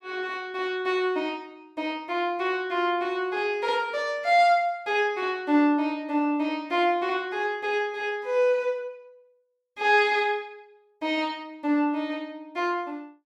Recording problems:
none

